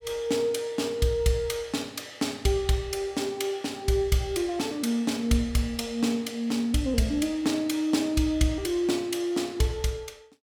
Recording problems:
none

